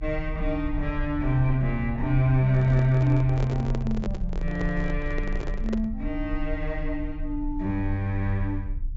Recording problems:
treble cut off; nothing above 8 kHz
low-frequency rumble; below 50 Hz, strongest tone 30 Hz, SNR 8 dB
microphone handling noise; from 2.5 to 6 s; peak -2 dB vs average level

